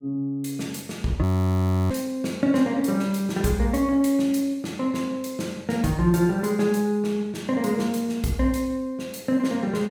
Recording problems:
frozen audio; at 1 s for 0.5 s

